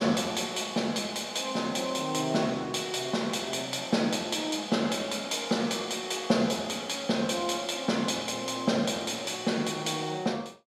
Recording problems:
none

